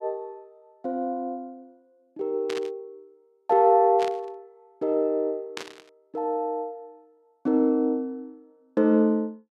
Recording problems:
burst of static; at 2.5 s, at 4 s and at 5.5 s; peak -5 dB vs average level

